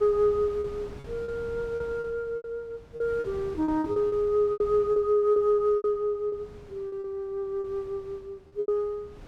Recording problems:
wind on the microphone; below 390 Hz, SNR 20 dB
lost packets; 12% of the sound replaced, filled with repeated pitch periods

